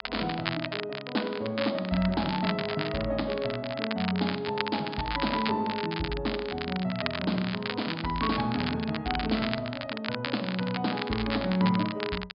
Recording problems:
low-pass filter; nothing above 5.1 kHz
crackling; vinyl, SNR 6 dB

